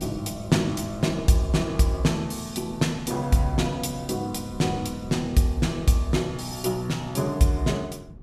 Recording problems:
wind noise; below 180 Hz, SNR 18 dB

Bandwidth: 15.5 kHz